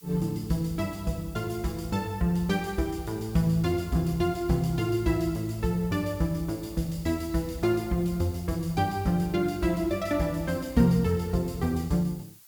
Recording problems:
hiss; SNR 22 dB

